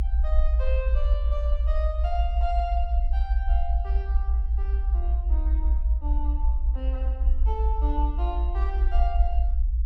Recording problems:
rumble; below 60 Hz, SNR -10 dB

